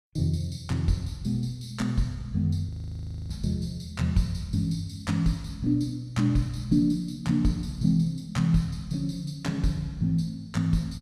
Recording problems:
frozen audio; at 2.5 s for 0.5 s

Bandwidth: 15.5 kHz